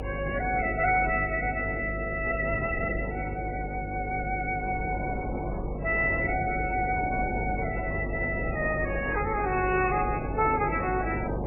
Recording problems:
lossy codec; MP3, then MP3, log-spectral distance 3 dB
hum; 50 Hz, harmonics up to 550 Hz, SNR 7 dB
wind noise; below 640 Hz, SNR 9 dB

